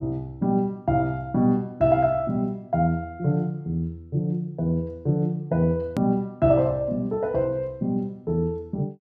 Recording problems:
hard cut with a click; at 6 s

